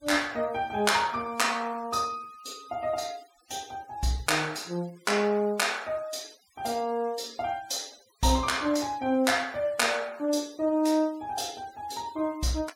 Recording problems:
noise reduction artefacts; signal-to-artefact ratio 24 dB

